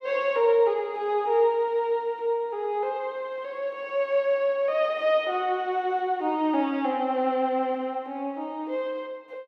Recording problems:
none

